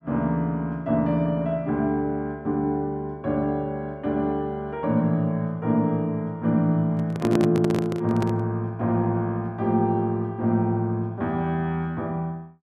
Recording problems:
handling noise; from 7 to 8.5 s; peak +2 dB vs average level

